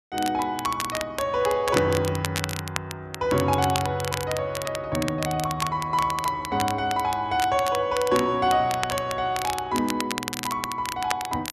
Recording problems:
crackling; vinyl, SNR 8 dB

